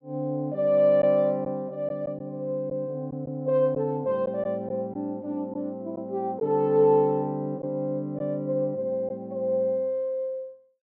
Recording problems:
lost packets; 1.8% of the sound replaced, filled with silence

